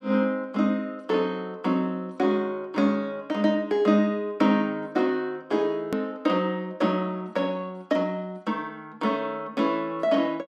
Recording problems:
hard cut with a click; at 6 s

